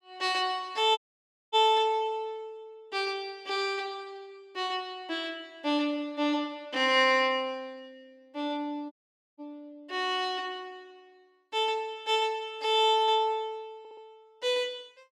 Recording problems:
audio cutting out; at 1 s for 0.5 s and at 9 s
stutter; at 14 s

